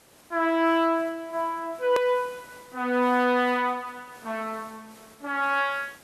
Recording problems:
background hiss; slope -4 dB per octave, SNR 25 dB
hard cut with a click; at 2 s

